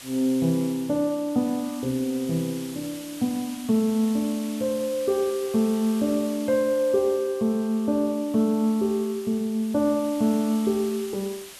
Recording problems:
hiss; slope 0 dB per octave, SNR 17 dB

